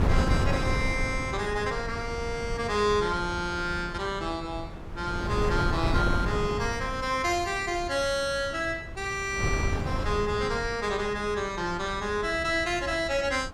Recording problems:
wind on the microphone; below 250 Hz, SNR 5 dB

